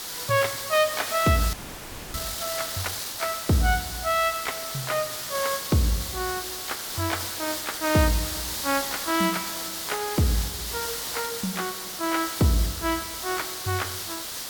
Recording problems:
background hiss; slope 0 dB per octave, SNR 4 dB
audio freezing; at 1.5 s for 0.5 s

